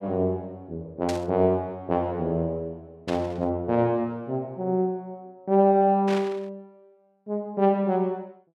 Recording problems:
static burst; at 1 s, at 3 s and at 6 s; peak -6 dB vs average level

